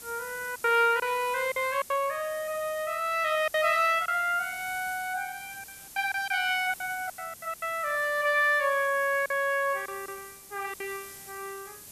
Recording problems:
hiss; SNR 17 dB
packet loss; 8% of the sound replaced, filled with silence

